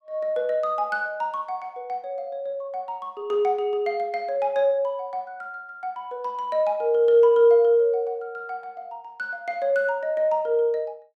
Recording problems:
none

